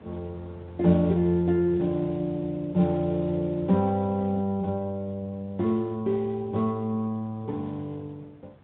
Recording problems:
low-pass filter; nothing above 4 kHz
codec artefacts; MP3, then Speex, log-spectral distance 2 dB
wind noise; below 510 Hz, SNR 23 dB

